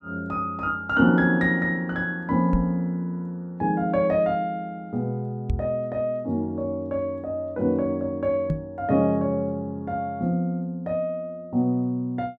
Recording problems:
microphone thump; at 2.5 s, at 5.5 s and at 8.5 s; peak +3 dB vs average level

